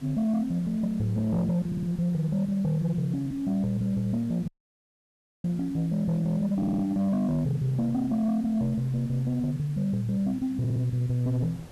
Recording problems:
distortion; soft clipping, signal-to-distortion ratio 12 dB
background hiss; slope -2 dB per octave, SNR 27 dB
wind on the microphone; below 470 Hz, SNR 26 dB
stutter; at 1.5 s, at 6.5 s and at 11 s
audio cutting out; at 4.5 s for 1 s

